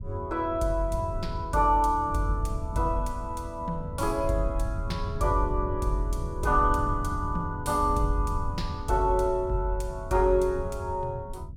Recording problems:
rumble; below 100 Hz, SNR 8 dB

